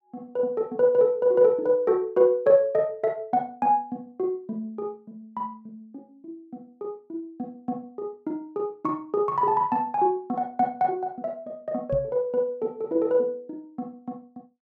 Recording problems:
microphone thump; at 12 s; peak -3 dB vs average level

